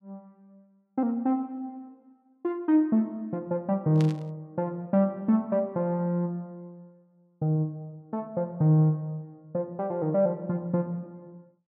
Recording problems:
static burst; at 4 s; peak -9 dB vs average level

